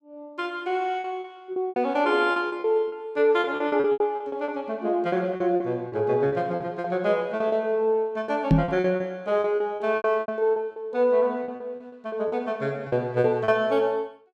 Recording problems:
lost packets; 14% of the sound replaced, filled with repeated pitch periods
microphone thump; at 8.5 s; peak +9 dB vs average level

